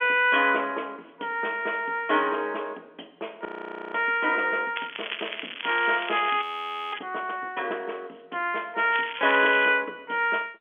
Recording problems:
telephone audio; 260 Hz to 3.4 kHz, G.711
frozen audio; at 3.5 s and at 6.5 s for 0.5 s
crackling; from 5 to 7 s and at 9 s; loose cable, SNR 9 dB

